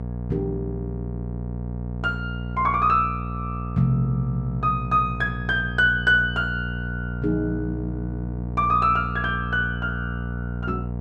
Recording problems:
electrical hum; 60 Hz, harmonics up to 960 Hz, SNR 7 dB

